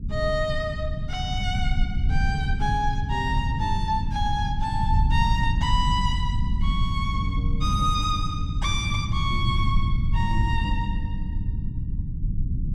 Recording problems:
low-frequency rumble; below 110 Hz, SNR 0 dB

